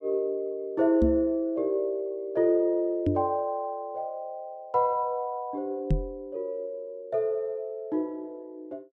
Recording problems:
microphone bump; at 1 s, at 3 s and at 6 s; peak +6 dB vs average level

